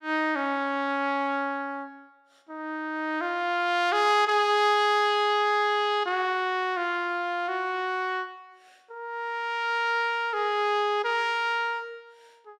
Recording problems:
none

